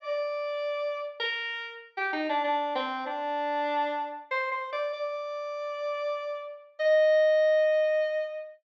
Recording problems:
treble cut off; nothing above 8 kHz

